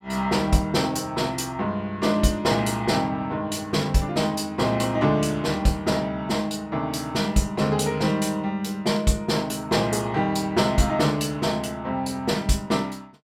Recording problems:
none

